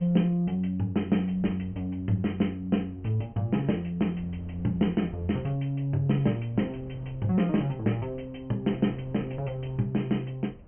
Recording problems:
treble cut off; nothing above 3.1 kHz
wind noise; below 230 Hz, SNR 22 dB

